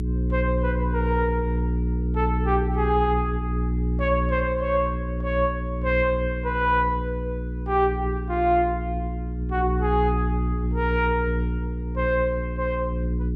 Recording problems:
electrical hum; 60 Hz, harmonics up to 420 Hz, SNR 1 dB

